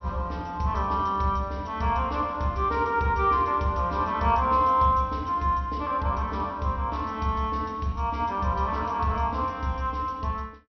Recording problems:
treble cut off; nothing above 5.9 kHz

